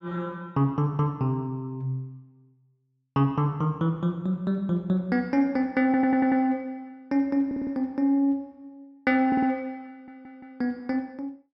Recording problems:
stutter; 4 times, first at 6 s

